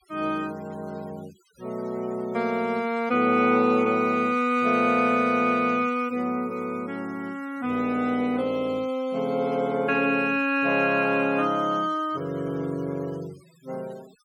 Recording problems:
noise reduction artefacts; signal-to-artefact ratio 26 dB

